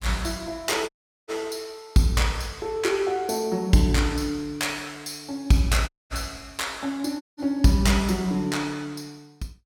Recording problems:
audio cutting out; at 1 s, at 6 s and at 7 s

